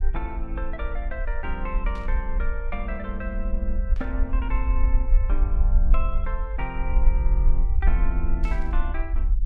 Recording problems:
rumble; below 48 Hz, strongest tone 20 Hz, SNR -8 dB
static burst; at 2 s, at 4 s and at 8.5 s; peak -8 dB vs average level

